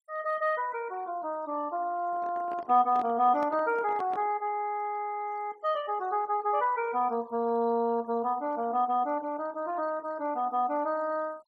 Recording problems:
denoising artefacts; signal-to-artefact ratio 26 dB
handling noise; from 2 to 4.5 s; peak -8 dB vs average level

